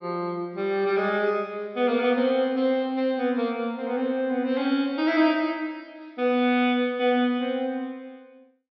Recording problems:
treble missing; nothing above 5.5 kHz

